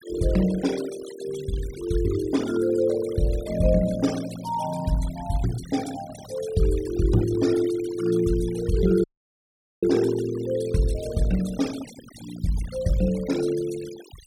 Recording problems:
denoising artefacts; signal-to-artefact ratio 16 dB
dropout; at 9 s for 1 s

